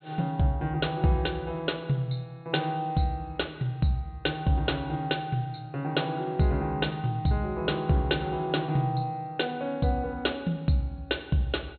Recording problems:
treble cut off; nothing above 4.3 kHz

